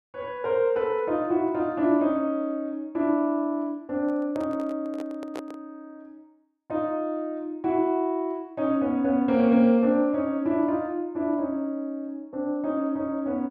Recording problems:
handling noise; from 4 to 5.5 s; peak -7 dB vs average level

